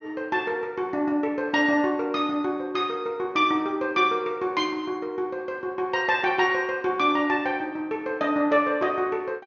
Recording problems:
low-pass filter; nothing above 6.6 kHz

